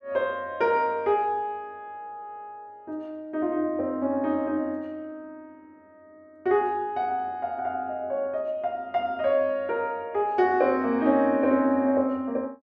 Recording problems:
none

